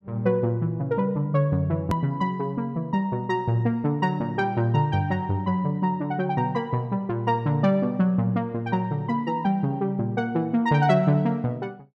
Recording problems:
hard cut with a click; at 2 s

